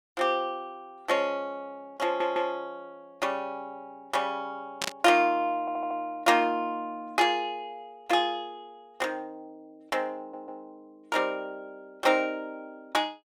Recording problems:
audio stuttering; at 2 s, at 5.5 s and at 10 s
static burst; at 5 s; peak +3 dB vs average level

